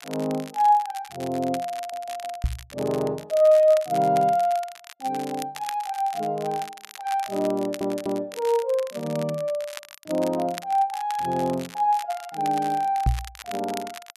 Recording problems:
crackle; vinyl, SNR 17 dB
audio stuttering; at 2 s and at 7.5 s
knock on the microphone; at 2.5 s and at 13 s; peak +6 dB vs average level

